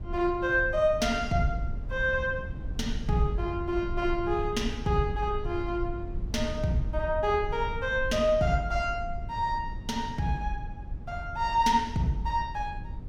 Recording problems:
low-frequency rumble; below 88 Hz, SNR 9 dB

